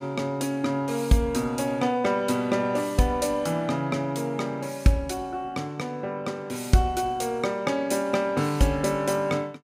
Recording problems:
none

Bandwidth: 15.5 kHz